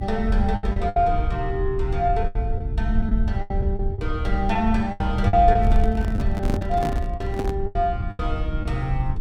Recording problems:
hum; 60 Hz, harmonics up to 360 Hz, SNR 12 dB
rumble; below 72 Hz, SNR 2 dB
packet loss; 10% of the sound replaced, filled with the last packet
handling noise; from 5.5 to 7.5 s; peak +2 dB vs average level

